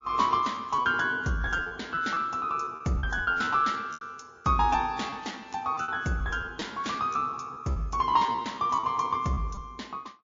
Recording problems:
lossy codec; MP3, log-spectral distance 3 dB, nothing above 6.2 kHz
lost packets; 11% of the sound replaced, filled with repeated pitch periods

